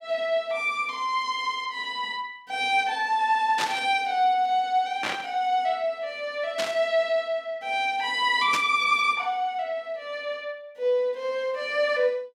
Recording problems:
static burst; 4 times, first at 3.5 s; peak +1 dB vs average level

